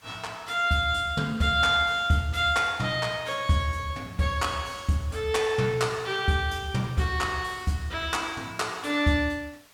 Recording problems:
hiss; slope -1 dB per octave, SNR 28 dB

